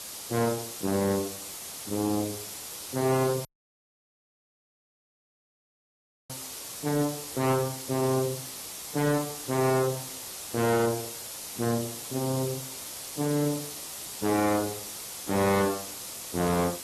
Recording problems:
codec artefacts; AAC, log-spectral distance 16 dB, nothing above 13.1 kHz
distortion; hard clipping, signal-to-distortion ratio 8 dB
background hiss; SNR 7 dB
dropout; at 3.5 s for 3 s

